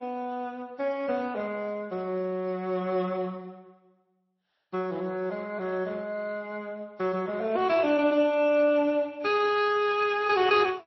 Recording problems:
lossy codec; Speex, then MP3, log-spectral distance 3 dB, nothing above 5.7 kHz

